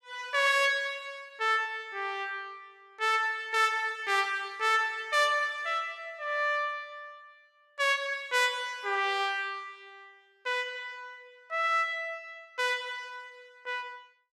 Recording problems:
none

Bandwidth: 15.5 kHz